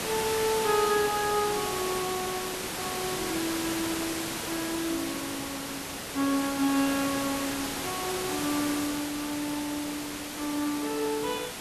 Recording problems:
background hiss; slope -3 dB per octave, SNR 2 dB

